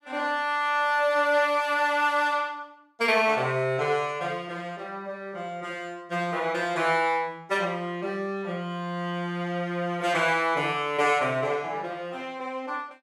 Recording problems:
none

